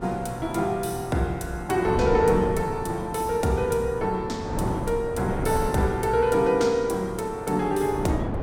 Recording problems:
wind on the microphone; below 450 Hz, SNR 8 dB

